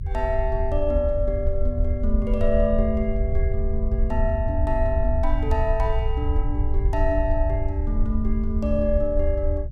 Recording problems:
low-frequency rumble; below 72 Hz, SNR -1 dB

